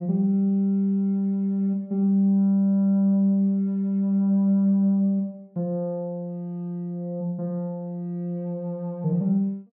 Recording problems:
none

